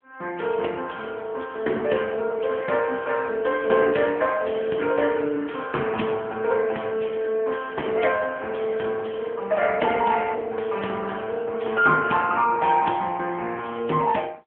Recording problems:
telephone audio; 220 Hz to 3.3 kHz, AMR-NB

